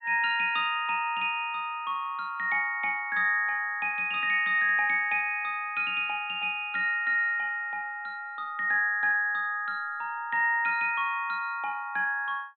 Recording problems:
treble missing; nothing above 4 kHz

